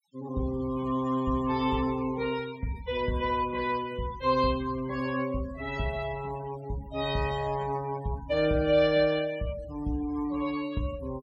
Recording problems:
noise reduction artefacts; signal-to-artefact ratio 18 dB

